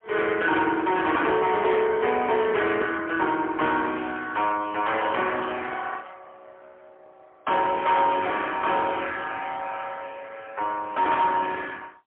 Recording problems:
telephone audio; 260 Hz to 3.4 kHz, AMR-NB, then MP3
distortion; hard clipping, uneven, signal-to-distortion ratio 12 dB

